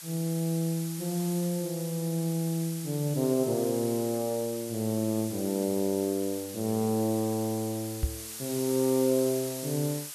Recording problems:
hiss; slope +3 dB per octave, SNR 10 dB
microphone bump; at 8 s; peak +4 dB vs average level

